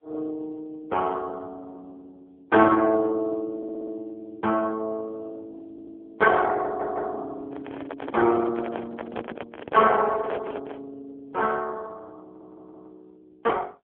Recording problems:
phone line; 220 Hz to 3.4 kHz, AMR-NB
audio stuttering; 4 times, first at 3.5 s
handling noise; from 7.5 to 11 s; peak -3 dB vs average level

